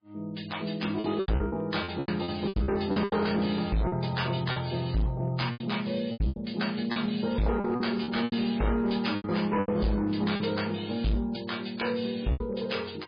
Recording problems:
codec artefacts; MP3, log-spectral distance 5 dB
distorted audio; hard clipping, uneven, signal-to-distortion ratio 7 dB
packet loss; 11% of the sound replaced, filled with repeated pitch periods

